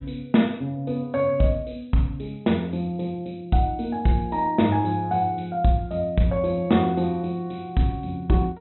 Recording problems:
treble cut off; nothing above 3.9 kHz

